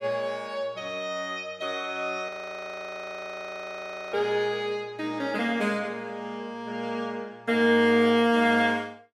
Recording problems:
frozen audio; at 2.5 s for 2 s

